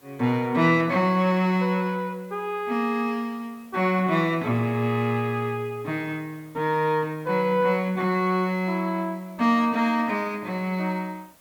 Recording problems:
hiss; SNR 29 dB

